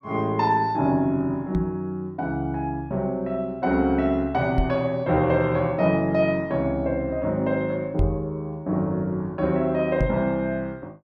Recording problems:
knock on the microphone; 4 times, first at 1.5 s; peak +4 dB vs average level

